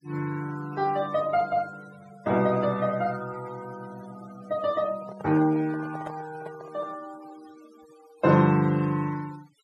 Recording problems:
denoising artefacts; signal-to-artefact ratio 21 dB
handling noise; from 5 to 7 s; peak -7 dB vs average level

